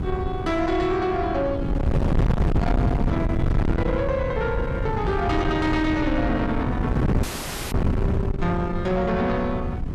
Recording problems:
distortion; soft clipping, signal-to-distortion ratio 6 dB
wind on the microphone; below 230 Hz, SNR 1 dB
dropout; at 7 s

